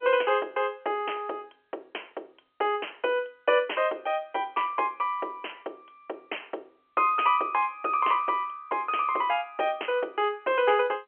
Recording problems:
phone line; 300 Hz to 3.2 kHz, G.711

